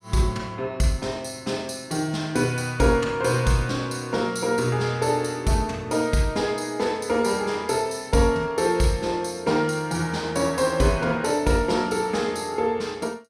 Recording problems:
none

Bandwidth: 15.5 kHz